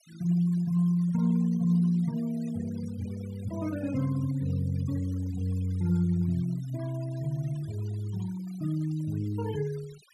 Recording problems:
denoising artefacts; signal-to-artefact ratio 22 dB

